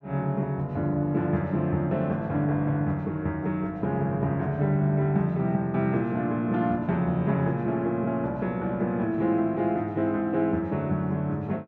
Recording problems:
none

